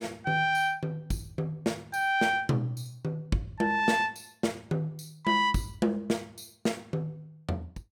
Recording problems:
none

